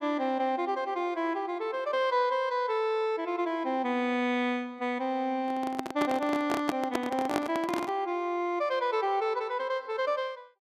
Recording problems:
microphone handling noise; from 5.5 to 8 s; peak +4 dB vs average level

